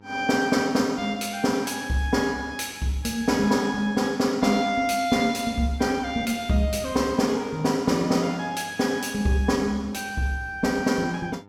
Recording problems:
hum; 50 Hz, harmonics up to 1.8 kHz, SNR 26 dB

